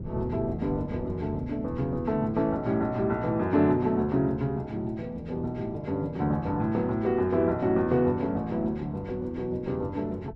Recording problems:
wind noise; below 200 Hz, SNR 16 dB

